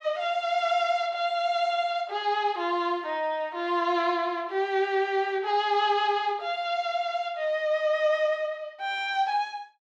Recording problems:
none

